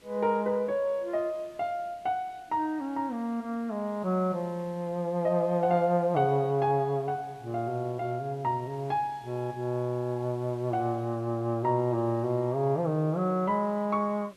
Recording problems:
hiss; SNR 28 dB

